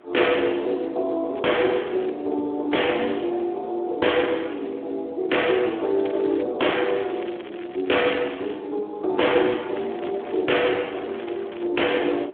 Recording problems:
phone line; 260 Hz to 3.4 kHz, Speex
wind on the microphone; below 1 kHz, SNR 24 dB
crackling; 4 times, first at 1.5 s; loose cable, SNR 20 dB

